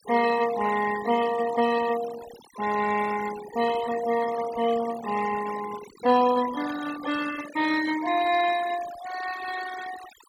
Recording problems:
denoising artefacts; signal-to-artefact ratio 12 dB

